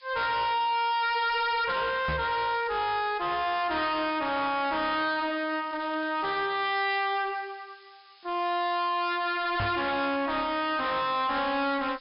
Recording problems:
treble cut off; nothing above 5.5 kHz
distorted audio; hard clipping, signal-to-distortion ratio 6 dB
hiss; SNR 27 dB
microphone bump; at 2 s and at 9.5 s; peak 0 dB vs average level
crackling; from 2.5 to 4.5 s and at 5.5 s; loose cable, SNR 27 dB

